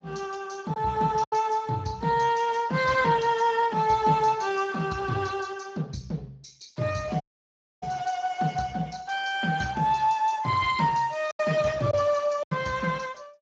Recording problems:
lossy compression; Speex, log-spectral distance 5 dB
lost packets; 2% of the sound replaced, filled with silence
audio cutting out; at 7 s for 0.5 s

